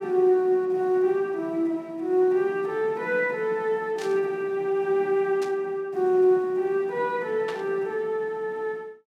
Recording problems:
burst of static; at 4 s, at 5.5 s and at 7.5 s; peak -8 dB vs average level

